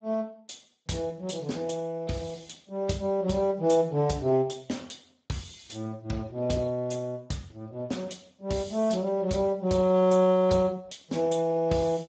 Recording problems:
lossy codec; Speex, log-spectral distance 4 dB, nothing above 7.8 kHz

